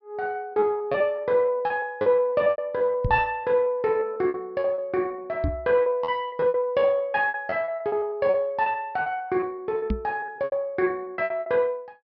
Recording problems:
treble cut off; nothing above 5.5 kHz
packet loss; 18% of the sound replaced, filled with repeated pitch periods
microphone thump; at 3 s, at 5.5 s and at 10 s; peak +2 dB vs average level

